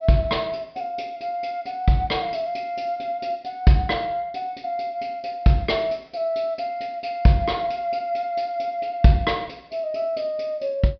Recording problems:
treble missing; nothing above 5.5 kHz

